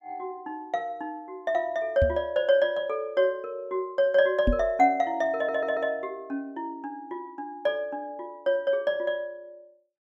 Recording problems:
microphone thump; at 2 s and at 4.5 s; peak +5 dB vs average level
audio stuttering; at 5.5 s

